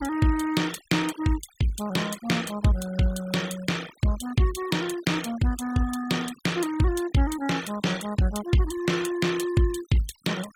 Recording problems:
noise reduction artefacts; signal-to-artefact ratio 17 dB

